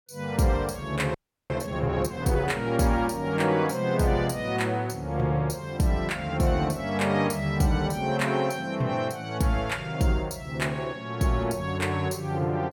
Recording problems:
audio freezing; at 1 s

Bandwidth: 17.5 kHz